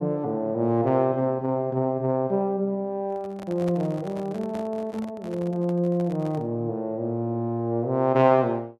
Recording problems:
handling noise; from 3 to 6.5 s; peak -9 dB vs average level

